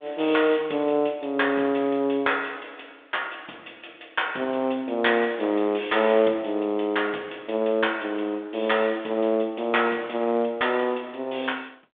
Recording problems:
phone line; 220 Hz to 3.6 kHz, G.726

